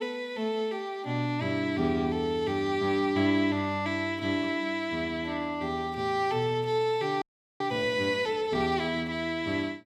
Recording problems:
frozen audio; at 7 s

